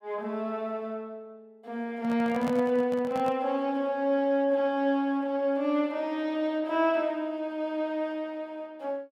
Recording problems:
handling noise; from 2 to 3.5 s; peak -3 dB vs average level

